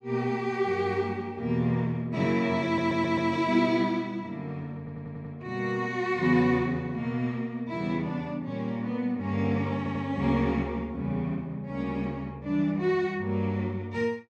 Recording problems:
stutter; at 2.5 s, at 5 s and at 10 s

